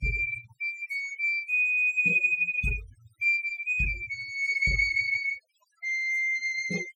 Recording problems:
denoising artefacts; signal-to-artefact ratio 21 dB

